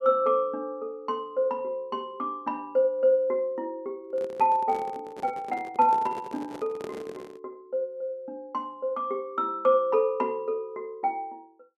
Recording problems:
microphone handling noise; from 4 to 7.5 s; peak -7 dB vs average level

